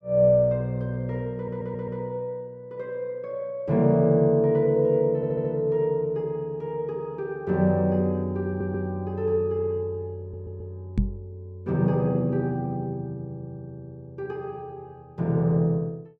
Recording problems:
audio stuttering; 4 times, first at 1.5 s
microphone thump; at 11 s; peak +5 dB vs average level

